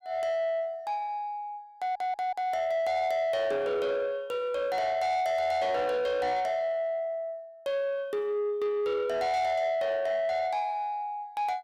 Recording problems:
distorted audio; soft clipping, signal-to-distortion ratio 11 dB
audio stuttering; at 2 s

